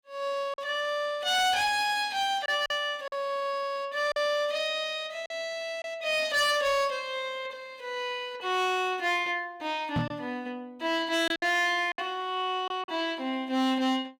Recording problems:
distorted audio; hard clipping, signal-to-distortion ratio 12 dB
packet loss; 3% of the sound replaced, filled with silence
microphone thump; at 10 s; peak +3 dB vs average level

